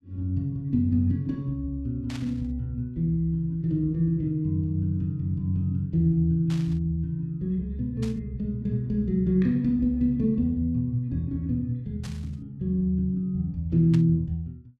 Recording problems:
burst of static; 5 times, first at 2 s; peak -11 dB vs average level

